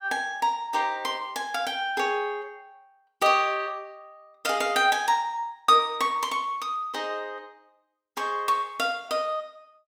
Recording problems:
none

